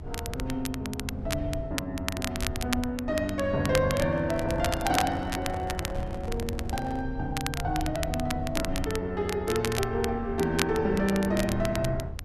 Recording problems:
rumble; below 100 Hz, SNR 8 dB
crackling; vinyl, SNR 7 dB
handling noise; from 4 to 7 s; peak -7 dB vs average level

